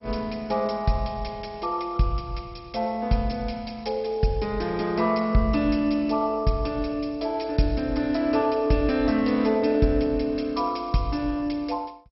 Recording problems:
lossy compression; MP2, log-spectral distance 4 dB, nothing above 5.5 kHz

